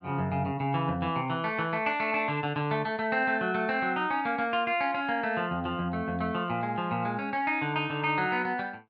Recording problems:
none

